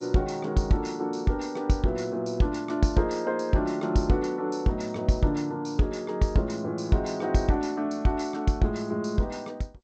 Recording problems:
codec artefacts; G.722, log-spectral distance 3 dB, nothing above 7.3 kHz

